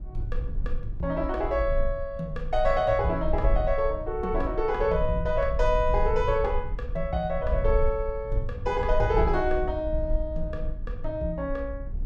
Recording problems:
rumble; below 56 Hz, strongest tone 22 Hz, SNR 6 dB

